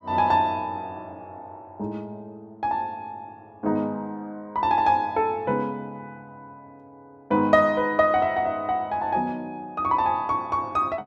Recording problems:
none

